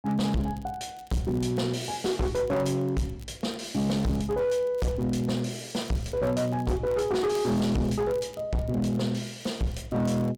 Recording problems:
distorted audio; hard clipping, signal-to-distortion ratio 6 dB
crackling; vinyl, SNR 27 dB

